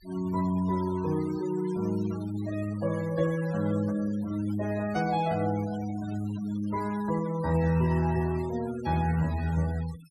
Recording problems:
noise reduction artefacts; signal-to-artefact ratio 18 dB

